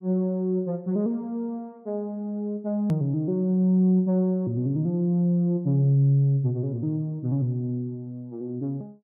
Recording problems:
edit click; at 3 s

